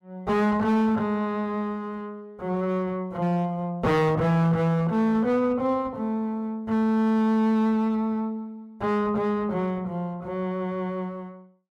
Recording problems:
distortion; hard clipping, signal-to-distortion ratio 11 dB

